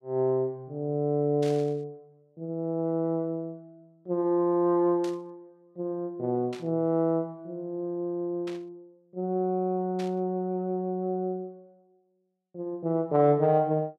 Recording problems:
static burst; 5 times, first at 1.5 s; peak -11 dB vs average level

